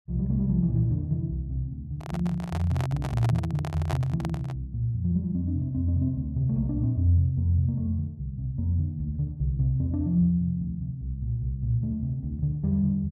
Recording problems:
handling noise; from 2 to 4.5 s; peak -2 dB vs average level

